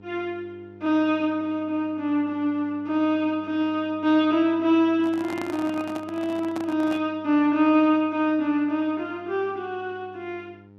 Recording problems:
hum; 50 Hz, harmonics up to 1.3 kHz, SNR 24 dB
microphone handling noise; from 5 to 7 s; peak -5 dB vs average level

